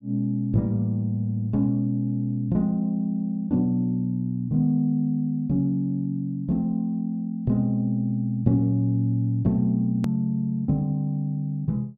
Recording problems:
click at an edit; at 10 s

